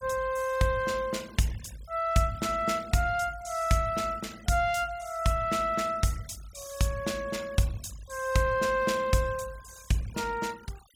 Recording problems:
denoising artefacts; signal-to-artefact ratio 21 dB

